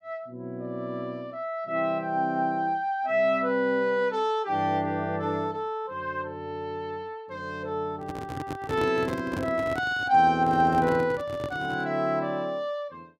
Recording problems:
microphone handling noise; from 8 to 12 s; peak -3 dB vs average level

